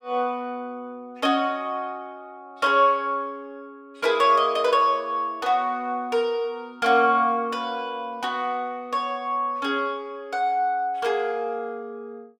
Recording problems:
none

